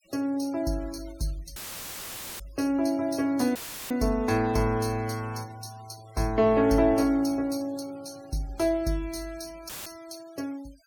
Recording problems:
denoising artefacts; signal-to-artefact ratio 24 dB
audio cutting out; at 1.5 s for 1 s, at 3.5 s and at 9.5 s; filled with static

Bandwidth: 18.5 kHz